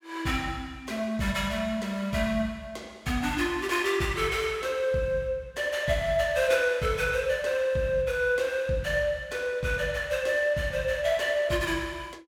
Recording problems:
none

